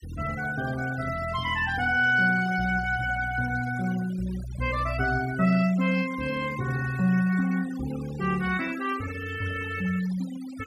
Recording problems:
denoising artefacts; signal-to-artefact ratio 17 dB

